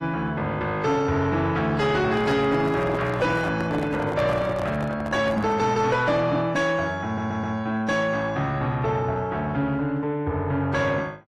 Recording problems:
codec artefacts; AAC, log-spectral distance 2 dB, nothing above 13.1 kHz
distorted audio; soft clipping, signal-to-distortion ratio 10 dB
handling noise; from 2 to 5.5 s; peak -1 dB vs average level
audio stuttering; at 7 s

